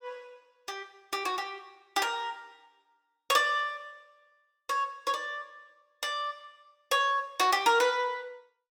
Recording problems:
none

